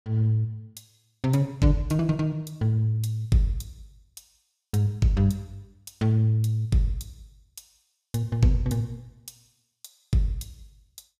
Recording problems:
none

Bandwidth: 15.5 kHz